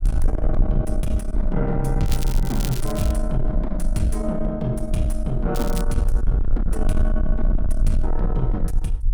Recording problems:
distorted audio; soft clipping, signal-to-distortion ratio 7 dB
low-frequency rumble; below 44 Hz, strongest tone 22 Hz, SNR 1 dB
crackle; from 2 to 3 s and at 5.5 s; loose cable, SNR 11 dB

